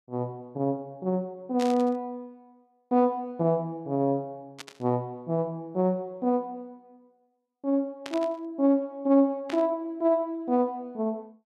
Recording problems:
static burst; 4 times, first at 1.5 s; peak -5 dB vs average level

